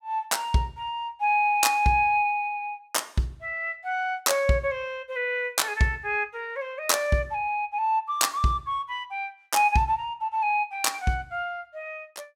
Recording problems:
none

